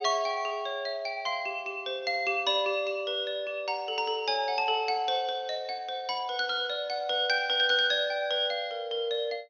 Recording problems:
treble cut off; nothing above 6.4 kHz

